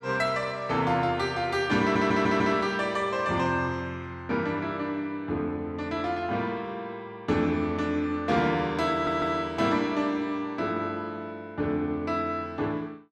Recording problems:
stutter; at 2 s and at 9 s

